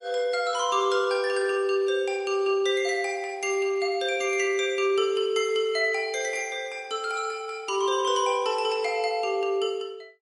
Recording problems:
lossy compression; MP3, log-spectral distance 2 dB, nothing above 10.7 kHz

